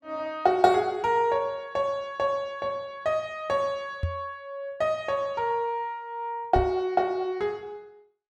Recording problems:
knock on the microphone; at 4 s and at 6.5 s; peak +3 dB vs average level

